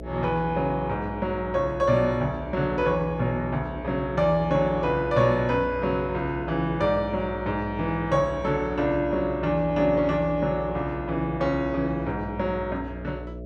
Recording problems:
electrical hum; 60 Hz, harmonics up to 660 Hz, SNR 12 dB

